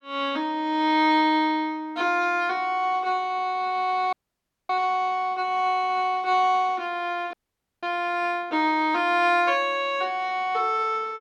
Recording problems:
frozen audio; at 4 s for 0.5 s and at 7.5 s

